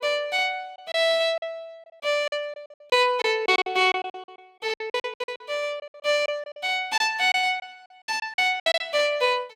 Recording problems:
lost packets; 14% of the sound replaced, filled with silence

